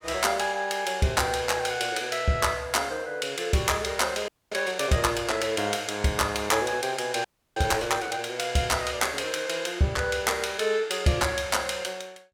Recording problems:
frozen audio; at 4.5 s and at 7.5 s

